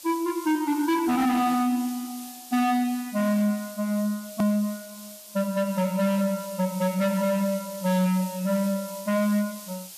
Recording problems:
distortion; hard clipping, signal-to-distortion ratio 11 dB
background hiss; SNR 15 dB
edit click; at 4.5 s

